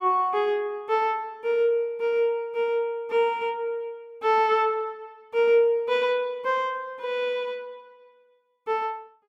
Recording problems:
none

